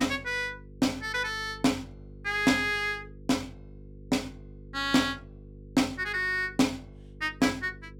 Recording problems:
hum; 50 Hz, harmonics up to 500 Hz, SNR 19 dB

